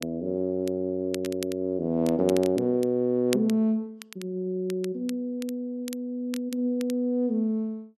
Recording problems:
crackle; vinyl, SNR 17 dB

